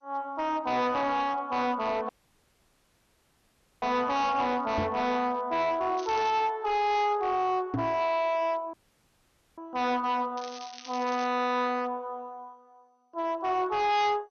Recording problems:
lossy codec; MP2, log-spectral distance 3 dB, nothing above 6.2 kHz
distorted audio; hard clipping, signal-to-distortion ratio 7 dB
dropout; at 2 s for 1.5 s and at 8.5 s for 1 s
knock on the microphone; at 5 s and at 7.5 s; peak +1 dB vs average level
crackle; at 6 s and at 10 s; loose cable, SNR 18 dB

